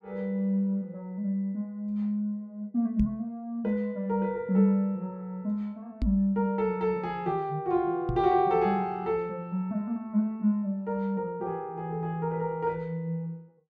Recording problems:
knock on the microphone; at 3 s, at 6 s and at 8 s; peak +2 dB vs average level

